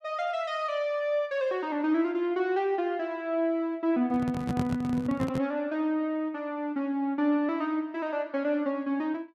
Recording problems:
handling noise; from 4 to 5.5 s; peak +3 dB vs average level

